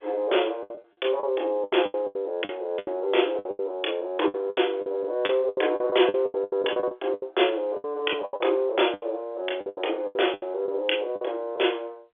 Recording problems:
telephone audio; 280 Hz to 3.5 kHz, G.711
packet loss; 17% of the sound replaced, filled with the last packet

